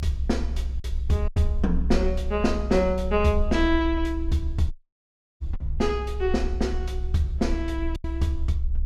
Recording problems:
electrical hum; 50 Hz, harmonics up to 550 Hz, SNR 19 dB
rumble; below 66 Hz, SNR 4 dB
lost packets; 3% of the sound replaced, filled with silence
dropout; at 4.5 s for 0.5 s

